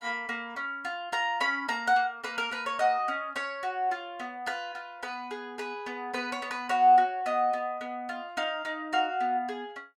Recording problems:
none

